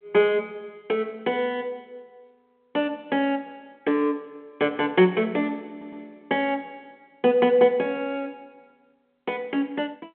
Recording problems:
phone line; 240 Hz to 3.3 kHz, G.726
stutter; at 5.5 s

